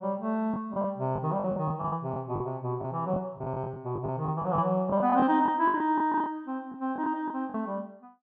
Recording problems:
packet loss; 12% of the sound replaced, filled with the last packet

